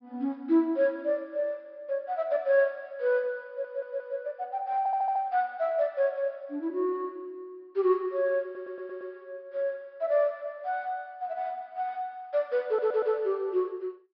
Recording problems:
low-pass filter; nothing above 5.5 kHz
audio stuttering; 4 times, first at 3.5 s

